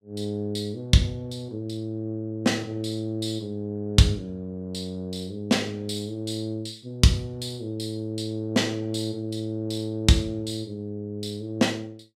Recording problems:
none

